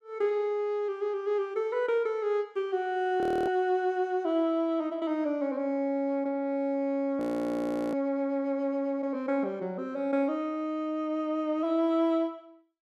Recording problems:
frozen audio; at 3 s and at 7 s for 0.5 s

